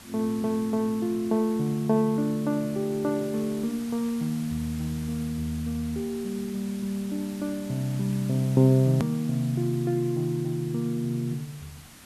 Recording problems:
hiss; slope -1 dB per octave, SNR 18 dB
edit click; at 9 s

